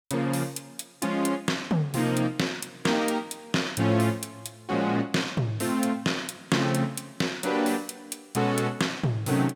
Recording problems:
none

